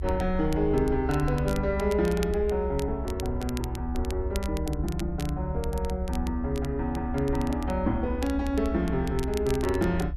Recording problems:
low-frequency rumble; below 72 Hz, SNR 6 dB
crackle; vinyl, SNR 17 dB

